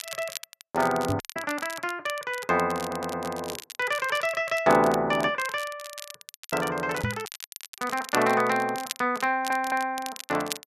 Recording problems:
crackle; vinyl, SNR 13 dB
microphone thump; at 1 s and at 7 s; peak +1 dB vs average level
audio cutting out; at 1 s, at 6.5 s and at 7.5 s for 0.5 s
audio stuttering; at 3 s and at 9.5 s

